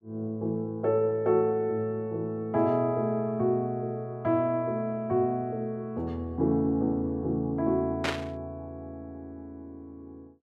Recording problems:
burst of static; at 8 s; peak +2 dB vs average level

